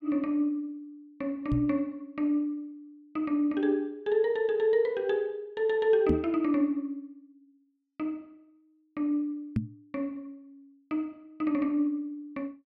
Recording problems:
microphone bump; at 1.5 s, at 6 s and at 9.5 s; peak +5 dB vs average level

